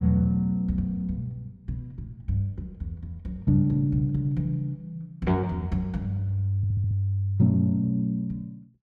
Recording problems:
audio stuttering; at 6.5 s

